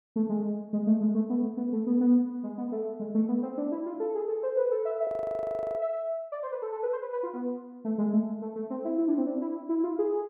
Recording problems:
audio freezing; at 5 s for 0.5 s

